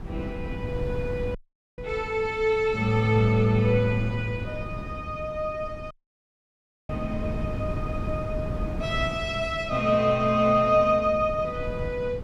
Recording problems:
wind on the microphone; below 210 Hz, SNR 10 dB
audio cutting out; at 1.5 s and at 6 s for 1 s

